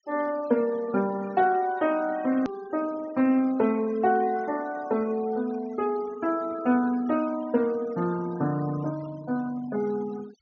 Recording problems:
treble cut off; nothing above 6.7 kHz
denoising artefacts; signal-to-artefact ratio 21 dB
click at an edit; at 2.5 s

